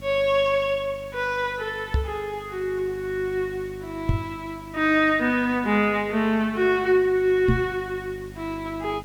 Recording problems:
hum; 50 Hz, harmonics up to 650 Hz, SNR 19 dB
background hiss; slope -1 dB per octave, SNR 27 dB
microphone thump; at 2 s, at 4 s and at 7.5 s; peak +5 dB vs average level

